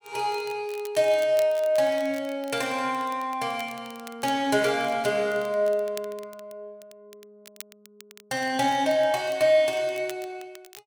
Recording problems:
crackling; vinyl, SNR 22 dB

